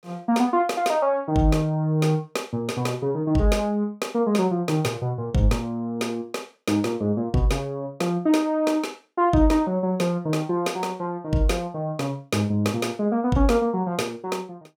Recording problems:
none

